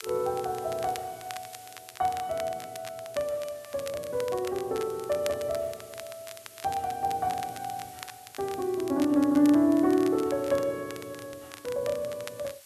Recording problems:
background hiss; slope +2 dB per octave, SNR 21 dB
crackle; vinyl, SNR 17 dB

